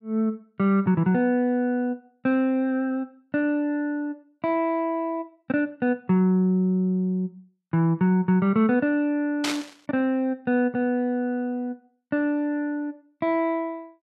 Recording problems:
burst of static; at 9.5 s; peak +1 dB vs average level

